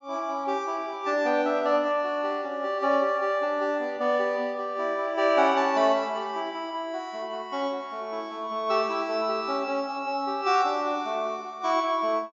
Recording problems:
low-pass filter; nothing above 8 kHz

